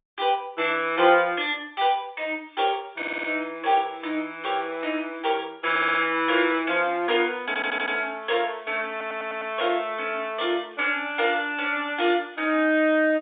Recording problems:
telephone audio; 260 Hz to 3.7 kHz, G.711
audio stuttering; 4 times, first at 3 s

